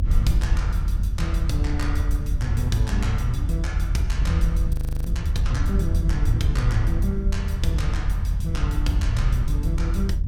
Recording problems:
low-frequency rumble; below 80 Hz, SNR -4 dB
wind on the microphone; below 180 Hz, SNR 17 dB
audio freezing; at 4.5 s

